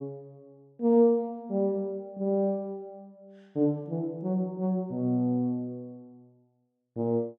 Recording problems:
none

